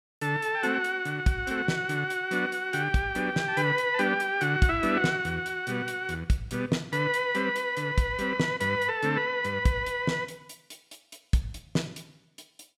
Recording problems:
none

